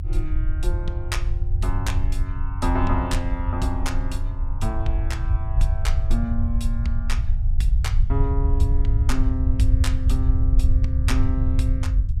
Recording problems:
low-frequency rumble; below 76 Hz, SNR -6 dB

